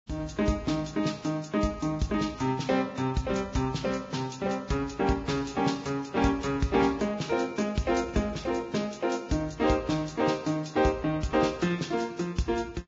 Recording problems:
lossy codec; Vorbis, log-spectral distance 4 dB, nothing above 7.3 kHz

